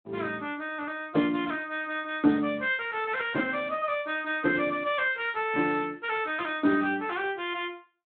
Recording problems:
telephone audio; 190 Hz to 3.5 kHz, Speex

